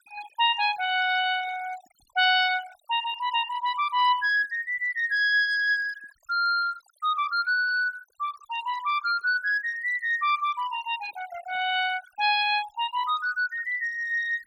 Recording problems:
noise reduction artefacts; signal-to-artefact ratio 18 dB

